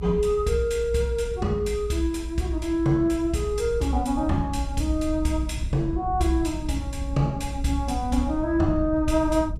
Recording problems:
low-frequency rumble; below 72 Hz, SNR 8 dB

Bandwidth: 14.5 kHz